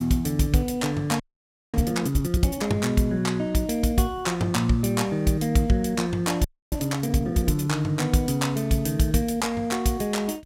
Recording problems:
audio freezing; at 1 s for 0.5 s and at 6.5 s

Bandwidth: 16.5 kHz